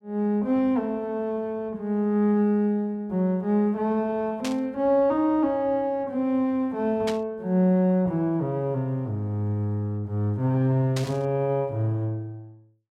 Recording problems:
burst of static; at 4.5 s, at 7 s and at 11 s; peak -4 dB vs average level

